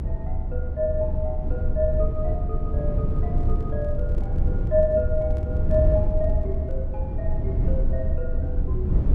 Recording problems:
hum; 50 Hz, harmonics up to 350 Hz, SNR 19 dB
low-frequency rumble; below 86 Hz, strongest tone 22 Hz, SNR -3 dB
handling noise; from 3 to 7 s; peak -12 dB vs average level

